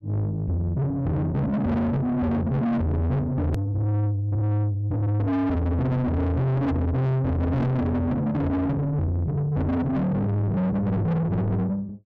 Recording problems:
distorted audio; soft clipping, signal-to-distortion ratio 7 dB
edit click; at 3.5 s

